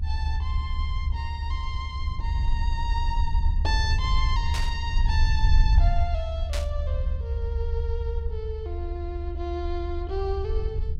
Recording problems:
low-frequency rumble; below 74 Hz, SNR -6 dB
burst of static; at 4.5 s and at 6.5 s; peak +4 dB vs average level

